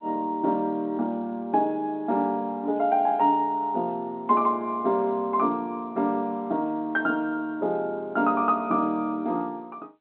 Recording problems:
telephone audio; 190 Hz to 3.8 kHz, G.711

